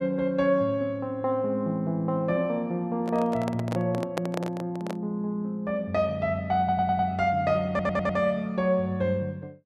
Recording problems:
microphone handling noise; from 3 to 5 s; peak +2 dB vs average level
audio stuttering; at 6.5 s and at 7.5 s

